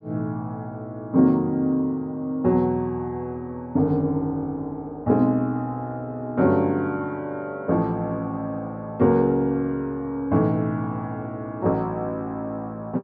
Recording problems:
none

